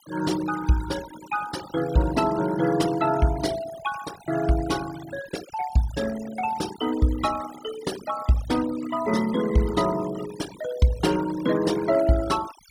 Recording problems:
denoising artefacts; signal-to-artefact ratio 14 dB

